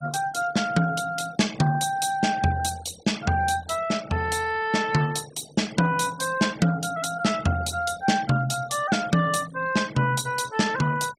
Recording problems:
denoising artefacts; signal-to-artefact ratio 19 dB

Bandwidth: 16 kHz